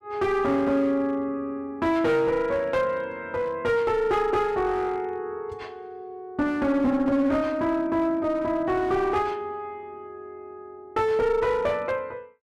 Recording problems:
distortion; hard clipping, uneven, signal-to-distortion ratio 10 dB

